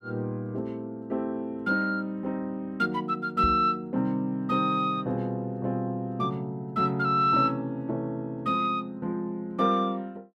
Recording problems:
microphone thump; at 3.5 s; peak 0 dB vs average level

